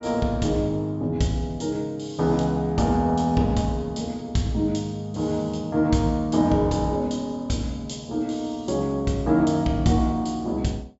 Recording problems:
low-pass filter; nothing above 8 kHz

